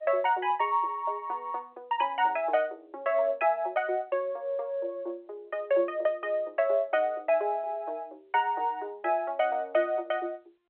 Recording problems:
telephone audio; 300 Hz to 3.3 kHz, G.711

